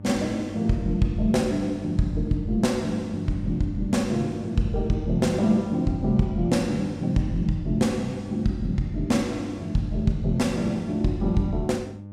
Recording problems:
electrical hum; 50 Hz, harmonics up to 600 Hz, SNR 13 dB

